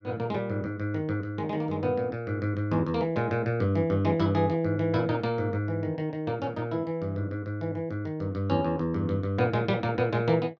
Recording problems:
none

